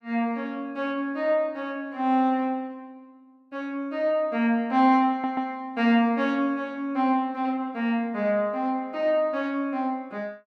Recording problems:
stutter; at 5 s

